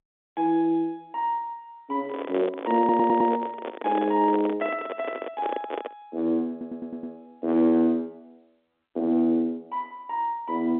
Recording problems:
phone line; 190 Hz to 3.8 kHz, G.711
microphone handling noise; from 2 to 6 s; peak -1 dB vs average level
stutter; at 3 s and at 6.5 s

